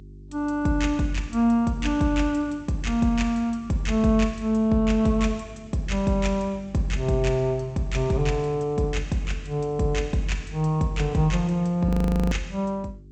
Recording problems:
lossy compression; G.722, log-spectral distance 2 dB
hum; 50 Hz, harmonics up to 400 Hz, SNR 22 dB
frozen audio; at 12 s

